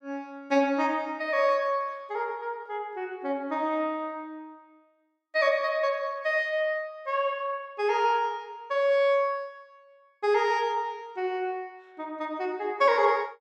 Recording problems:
none

